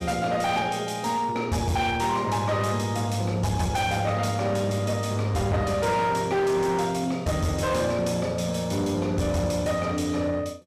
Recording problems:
distorted audio; hard clipping, uneven, signal-to-distortion ratio 10 dB

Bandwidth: 14.5 kHz